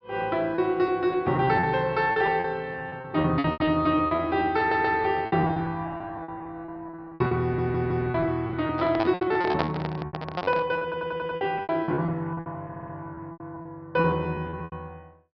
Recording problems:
low-pass filter; nothing above 5.5 kHz
lost packets; 18% of the sound replaced, filled with repeated pitch periods
stutter; 4 times, first at 4.5 s
microphone handling noise; from 8.5 to 11 s; peak +3 dB vs average level

